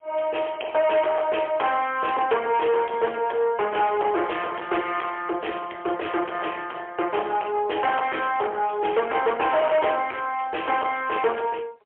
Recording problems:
telephone audio; 340 Hz to 3.3 kHz, AMR-NB, then MP3
distorted audio; soft clipping, signal-to-distortion ratio 7 dB

